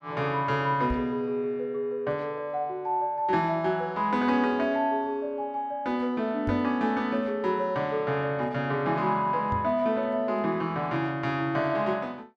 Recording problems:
microphone bump; at 1 s, at 6.5 s and at 9.5 s; peak -1 dB vs average level

